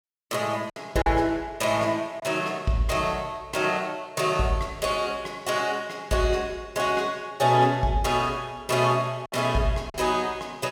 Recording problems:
packet loss; 2% of the sound replaced, filled with silence

